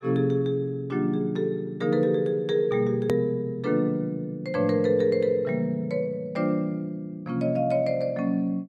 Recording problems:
hard cut with a click; at 3 s

